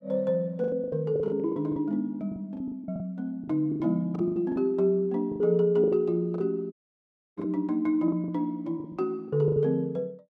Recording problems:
lost packets; 14% of the sound replaced, filled with the last packet
audio cutting out; at 6.5 s for 0.5 s

